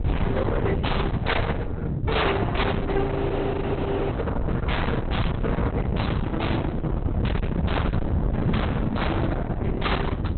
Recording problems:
lossy compression; Opus, log-spectral distance 4 dB, nothing above 4.1 kHz
distortion; hard clipping, signal-to-distortion ratio 7 dB
wind on the microphone; below 320 Hz, SNR 0 dB
frozen audio; at 3 s for 1 s

